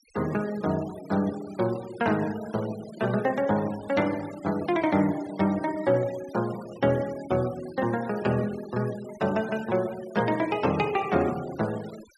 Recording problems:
denoising artefacts; signal-to-artefact ratio 18 dB

